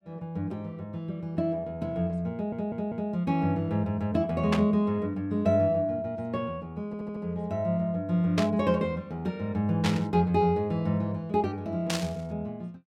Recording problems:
audio stuttering; at 2.5 s and at 7 s
static burst; 4 times, first at 4.5 s; peak +2 dB vs average level

